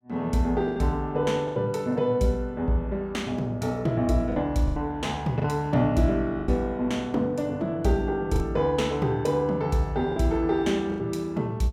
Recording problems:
packet loss; 5% of the sound replaced, filled with the last packet

